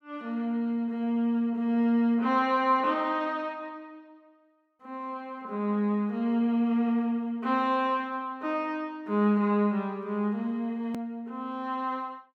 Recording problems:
hard cut with a click; at 11 s

